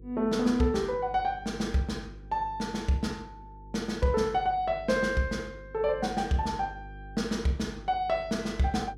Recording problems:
hum; 50 Hz, harmonics up to 500 Hz, SNR 18 dB

